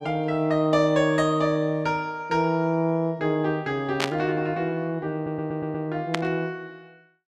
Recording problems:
static burst; at 4 s and at 6 s; peak +4 dB vs average level
audio stuttering; at 5 s

